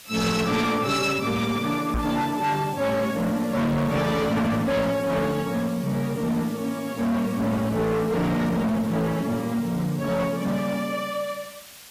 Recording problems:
lossy codec; AAC, log-spectral distance 4 dB, nothing above 15.1 kHz
distortion; hard clipping, signal-to-distortion ratio 7 dB
background hiss; slope +1 dB per octave, SNR 19 dB
knock on the microphone; at 2 s; peak +1 dB vs average level

